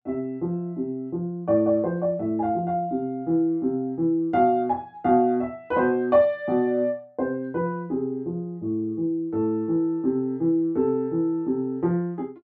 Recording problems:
none

